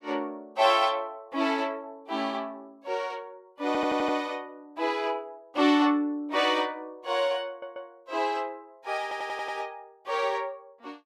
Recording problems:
stutter; at 3.5 s, at 7.5 s and at 9 s

